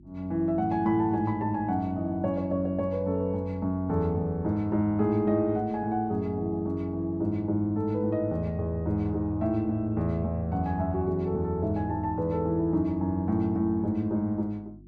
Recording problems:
hum; 50 Hz, harmonics up to 350 Hz, SNR 23 dB

